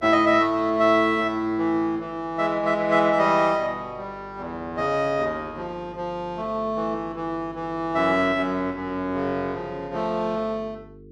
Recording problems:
hum; 50 Hz, harmonics up to 450 Hz, SNR 23 dB

